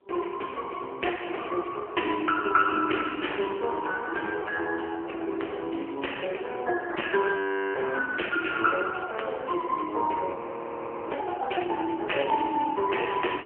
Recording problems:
telephone audio; 280 Hz to 3.1 kHz, AMR-NB
wind on the microphone; below 960 Hz, SNR 15 dB
frozen audio; at 7.5 s and at 10 s for 0.5 s

